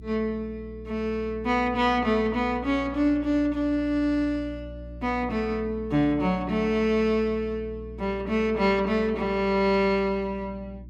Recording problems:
electrical hum; 60 Hz, harmonics up to 360 Hz, SNR 16 dB

